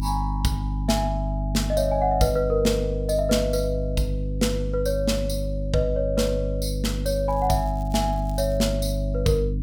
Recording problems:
electrical hum; 50 Hz, harmonics up to 300 Hz, SNR 3 dB
crackle; from 7.5 to 8.5 s; loose cable, SNR 26 dB

